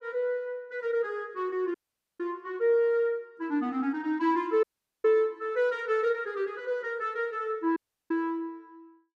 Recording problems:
dropout; at 1.5 s, at 4.5 s and at 8 s

